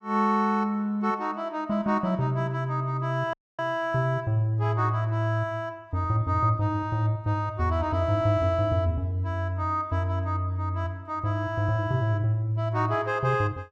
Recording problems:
audio cutting out; at 3.5 s

